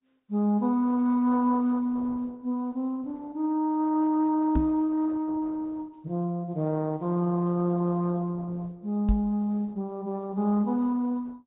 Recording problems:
treble cut off; nothing above 3.8 kHz
codec artefacts; Opus, log-spectral distance 2 dB
knock on the microphone; at 4.5 s and at 9 s; peak +4 dB vs average level

